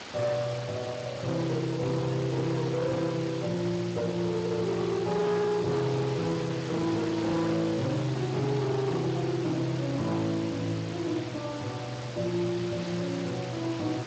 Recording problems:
lossy codec; Speex, log-spectral distance 12 dB
distorted audio; hard clipping, signal-to-distortion ratio 12 dB
hiss; slope -3 dB per octave, SNR 11 dB

